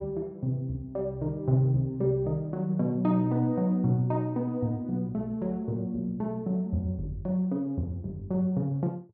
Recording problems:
treble missing; nothing above 5.5 kHz

